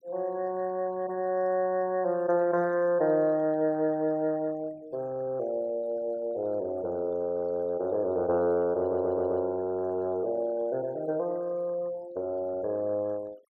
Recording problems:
denoising artefacts; signal-to-artefact ratio 26 dB
stutter; at 9 s

